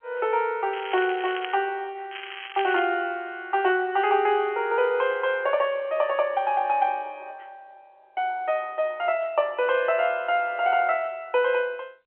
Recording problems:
telephone audio; 320 Hz to 3.3 kHz, G.711
crackle; at 0.5 s and at 2 s; loose cable, SNR 13 dB

